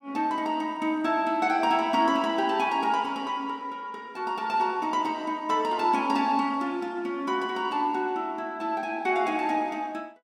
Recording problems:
none

